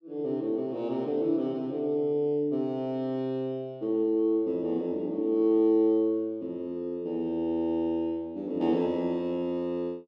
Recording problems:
none

